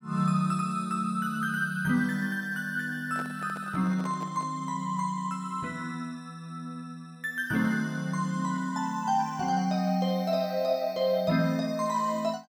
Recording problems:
microphone handling noise; from 3 to 4.5 s; peak -9 dB vs average level

